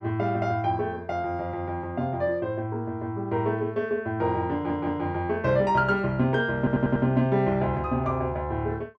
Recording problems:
audio stuttering; at 4.5 s and at 6.5 s

